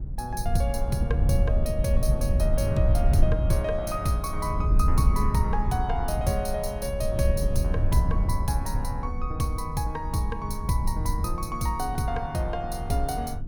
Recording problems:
rumble; below 86 Hz, SNR -1 dB

